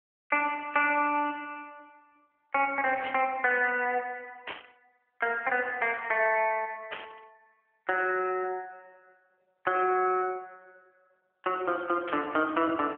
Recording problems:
phone line; 260 Hz to 3.2 kHz, AMR-NB
static burst; 4 times, first at 3 s; peak -5 dB vs average level

